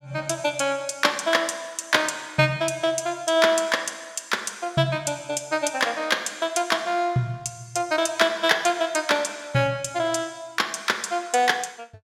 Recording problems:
none

